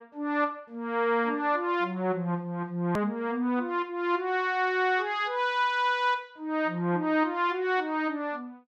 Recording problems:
hard cut with a click; at 3 s

